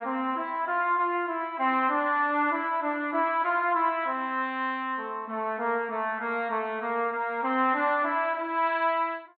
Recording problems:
treble cut off; nothing above 4.4 kHz

